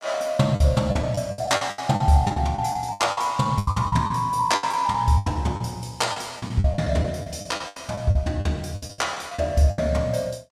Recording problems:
lost packets; 16% of the sound replaced, filled with the last packet

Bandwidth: 14.5 kHz